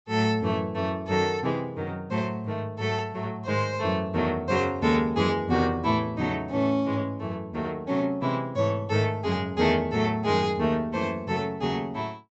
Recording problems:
treble missing; nothing above 7.9 kHz

